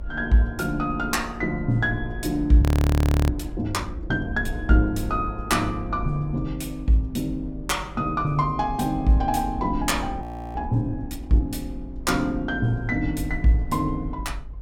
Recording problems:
rumble; below 62 Hz, SNR 12 dB
audio freezing; at 2.5 s for 0.5 s and at 10 s

